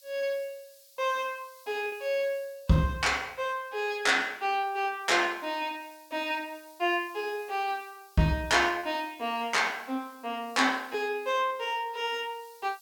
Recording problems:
hiss; SNR 26 dB
lost packets; 1.5% of the sound replaced, filled with repeated pitch periods

